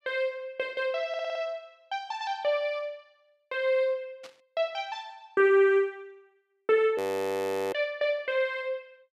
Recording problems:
audio stuttering; at 1 s
burst of static; at 4 s; peak -15 dB vs average level
audio freezing; at 7 s for 0.5 s

